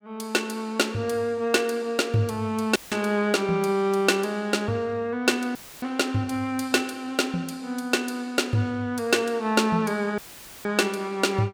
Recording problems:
dropout; at 3 s, at 5.5 s and at 10 s; filled with static

